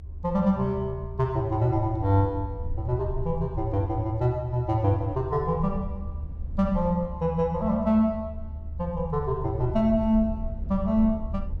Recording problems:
rumble; below 76 Hz, SNR 10 dB

